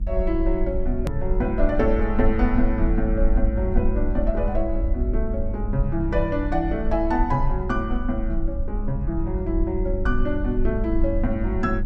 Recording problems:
hum; 50 Hz, harmonics up to 500 Hz, SNR 9 dB
low-frequency rumble; below 50 Hz, SNR 2 dB
edit click; at 1 s

